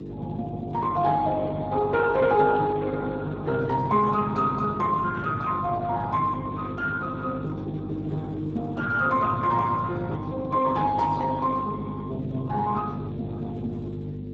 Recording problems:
codec artefacts; Speex, log-spectral distance 3 dB
hum; 50 Hz, harmonics up to 500 Hz, SNR 9 dB

